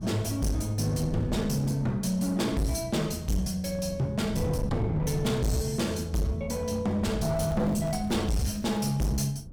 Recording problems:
distorted audio; hard clipping, signal-to-distortion ratio 7 dB
wind noise; below 200 Hz, SNR 9 dB
crackle; from 7.5 to 9 s; loose cable, SNR 26 dB

